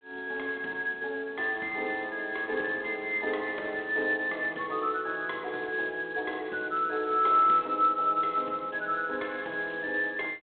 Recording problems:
telephone audio; 300 Hz to 3.9 kHz, G.726

